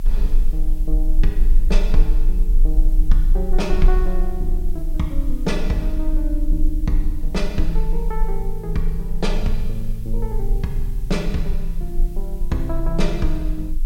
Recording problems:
background hiss; SNR 23 dB
low-frequency rumble; below 34 Hz, strongest tone 22 Hz, SNR -3 dB

